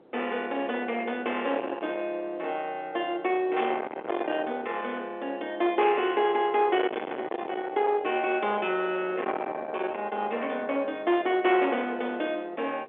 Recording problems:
telephone audio; 320 Hz to 3.4 kHz, G.711
distortion; soft clipping, signal-to-distortion ratio 8 dB
wind noise; below 980 Hz, SNR 13 dB

